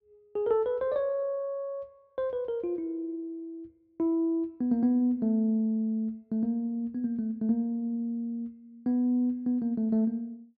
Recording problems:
none

